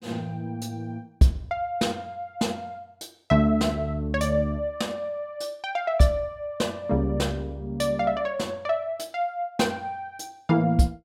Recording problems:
none

